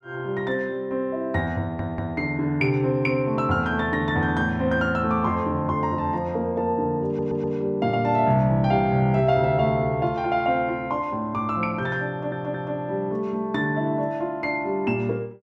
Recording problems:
audio stuttering; at 1.5 s, at 7 s and at 12 s

